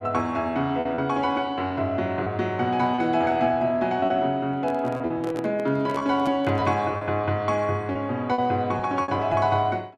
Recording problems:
lost packets; 6% of the sound replaced, filled with repeated pitch periods
handling noise; from 4.5 to 7 s; peak -6 dB vs average level

